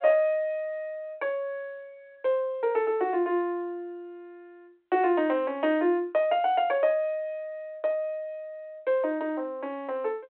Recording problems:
telephone audio; 280 Hz to 3.4 kHz, G.726

